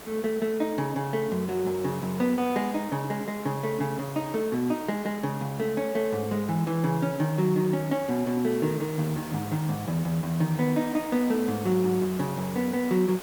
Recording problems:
hiss; slope -5 dB per octave, SNR 14 dB

